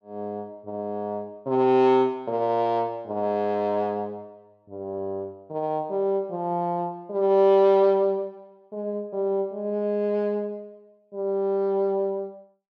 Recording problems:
none

